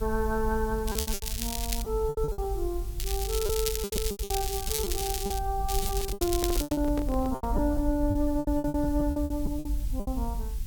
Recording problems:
background hiss; slope +3 dB per octave, SNR 18 dB
low-frequency rumble; below 60 Hz, SNR 4 dB
packet loss; 16% of the sound replaced, filled with repeated pitch periods
crackle; at 1 s, from 3 to 5.5 s and from 5.5 to 6.5 s; loose cable, SNR 2 dB
handling noise; from 6 to 7.5 s; peak -1 dB vs average level

